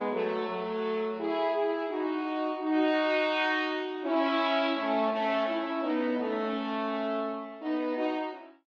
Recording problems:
codec artefacts; Opus, log-spectral distance 2 dB

